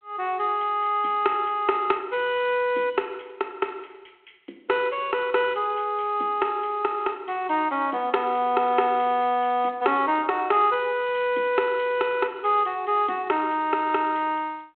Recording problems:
phone line; 260 Hz to 3.4 kHz, G.726

